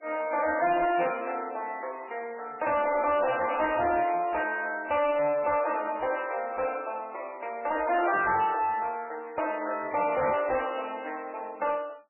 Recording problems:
codec artefacts; MP3, log-spectral distance 5 dB, nothing above 2.4 kHz
distortion; soft clipping, signal-to-distortion ratio 10 dB

